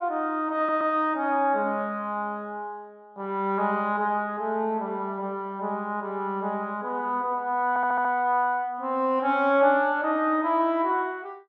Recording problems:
stutter; at 0.5 s and at 7.5 s

